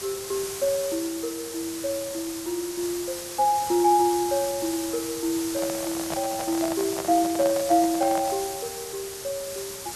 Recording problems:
background hiss; SNR 7 dB
handling noise; from 5.5 to 8.5 s; peak -2 dB vs average level

